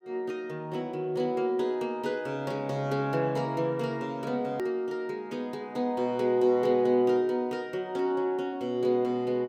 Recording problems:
hard cut with a click; at 4.5 s

